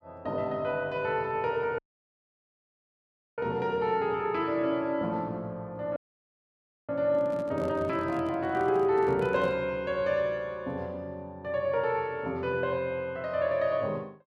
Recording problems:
dropout; at 2 s for 1.5 s and at 6 s for 1 s
microphone handling noise; from 7 to 9.5 s; peak -6 dB vs average level

